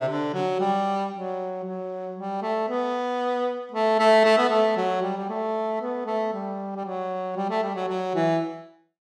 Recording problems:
none

